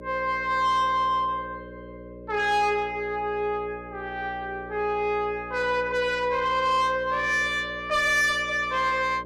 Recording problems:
distorted audio; soft clipping, signal-to-distortion ratio 11 dB
electrical hum; 60 Hz, harmonics up to 600 Hz, SNR 17 dB

